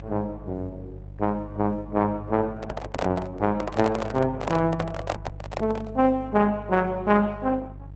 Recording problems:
codec artefacts; Opus, log-spectral distance 2 dB
electrical hum; 50 Hz, harmonics up to 350 Hz, SNR 15 dB
microphone handling noise; from 2.5 to 6 s; peak +2 dB vs average level

